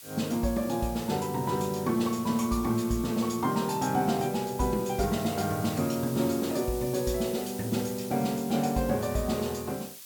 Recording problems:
background hiss; slope +4 dB per octave, SNR 13 dB

